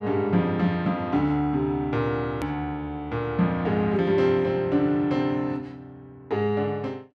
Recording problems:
edit click; at 2.5 s

